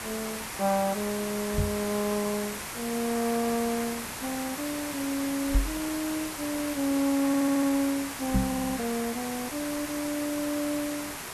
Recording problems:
codec artefacts; Vorbis, log-spectral distance 10 dB
hiss; slope -2 dB per octave, SNR 5 dB
microphone thump; at 1.5 s, at 5.5 s and at 8.5 s; peak +7 dB vs average level
stutter; at 7.5 s and at 8.5 s

